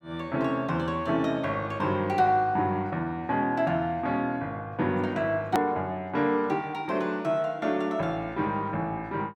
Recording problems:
hard cut with a click; at 5.5 s

